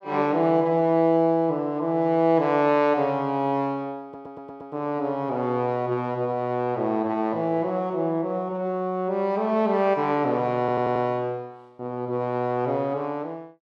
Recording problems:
stutter; at 4 s and at 11 s

